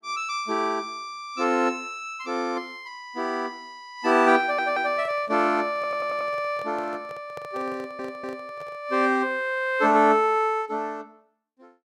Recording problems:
stutter; at 4.5 s, at 6 s and at 8 s
handling noise; from 4.5 to 9 s; peak -11 dB vs average level

